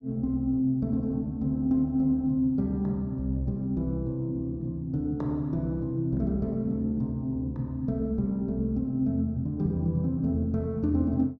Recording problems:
none

